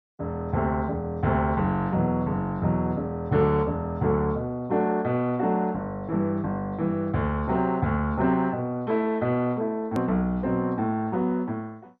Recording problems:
codec artefacts; MP2, log-spectral distance 2 dB, nothing above 13.1 kHz
edit click; at 10 s

